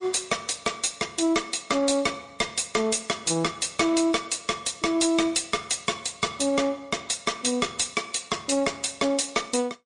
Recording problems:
lossy compression; MP3, log-spectral distance 7 dB
distortion; hard clipping, uneven, signal-to-distortion ratio 12 dB

